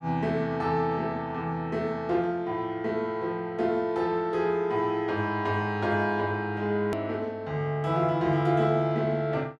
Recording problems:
click at an edit; at 7 s

